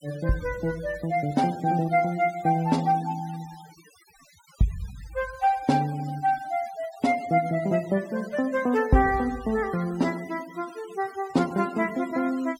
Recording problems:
denoising artefacts; signal-to-artefact ratio 20 dB

